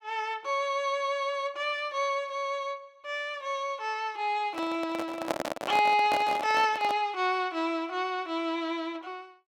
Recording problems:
handling noise; from 4.5 to 7 s; peak +4 dB vs average level

